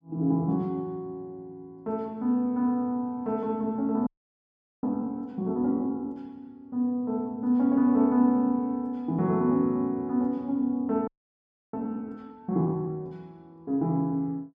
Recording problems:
audio freezing; at 4 s for 1 s and at 11 s for 0.5 s

